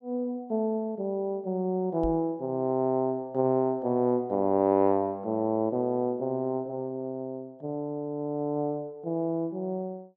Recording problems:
microphone bump; at 2 s; peak -2 dB vs average level

